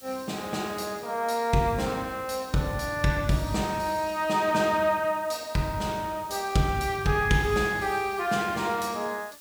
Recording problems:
background hiss; SNR 21 dB

